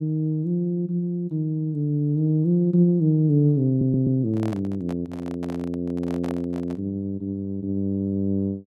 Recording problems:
audio stuttering; at 3.5 s
microphone handling noise; from 4.5 to 7 s; peak -9 dB vs average level

